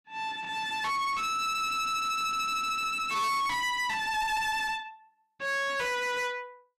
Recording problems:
distortion; soft clipping, signal-to-distortion ratio 6 dB

